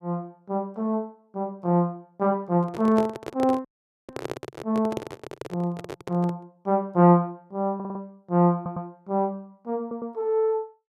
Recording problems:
microphone handling noise; from 2.5 to 6.5 s; peak -1 dB vs average level
audio cutting out; at 3.5 s
audio stuttering; at 8 s, at 8.5 s and at 10 s

